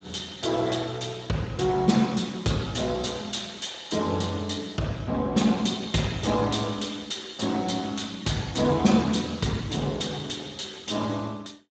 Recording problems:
codec artefacts; Speex, log-spectral distance 5 dB, nothing above 7.6 kHz

